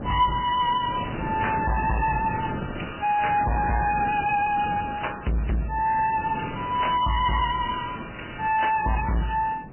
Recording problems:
lossy codec; MP3, then AAC, log-spectral distance 7 dB, nothing above 2.9 kHz
distortion; hard clipping, signal-to-distortion ratio 6 dB
wind noise; below 470 Hz, SNR 11 dB

